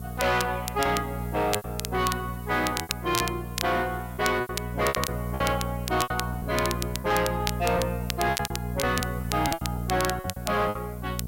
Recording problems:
distortion; soft clipping, signal-to-distortion ratio 10 dB
hum; 60 Hz, harmonics up to 660 Hz, SNR 6 dB
background hiss; SNR 20 dB
crackle; vinyl, SNR 7 dB
lost packets; 11% of the sound replaced, filled with repeated pitch periods

